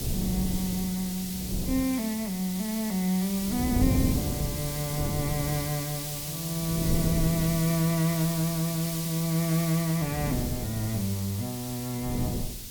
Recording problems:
hiss; SNR 5 dB
wind on the microphone; below 230 Hz, SNR 4 dB

